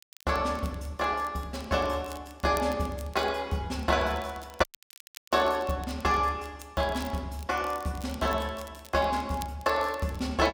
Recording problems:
crackle; vinyl, SNR 21 dB
audio cutting out; at 4.5 s for 0.5 s

